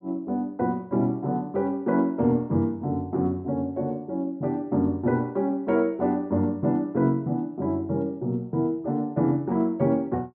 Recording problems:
none

